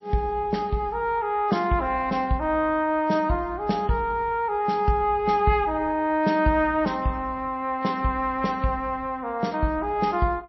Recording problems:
codec artefacts; MP3, then MP3, log-spectral distance 2 dB, nothing above 5.7 kHz

